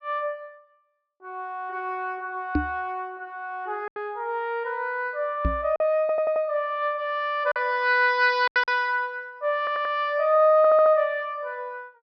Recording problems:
treble missing; nothing above 5.5 kHz
lost packets; 3% of the sound replaced, filled with silence
microphone bump; at 2.5 s and at 5.5 s; peak +4 dB vs average level
stutter; at 6 s, at 9.5 s and at 11 s

